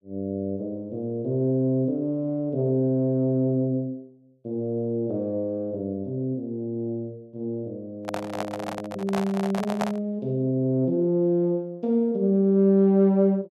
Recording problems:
microphone handling noise; from 8 to 10 s; peak +1 dB vs average level

